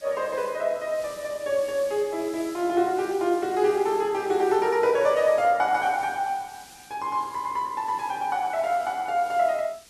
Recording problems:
background hiss; SNR 21 dB

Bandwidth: 12.5 kHz